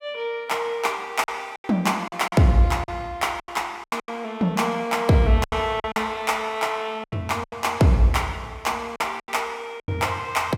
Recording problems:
packet loss; 9% of the sound replaced, filled with silence

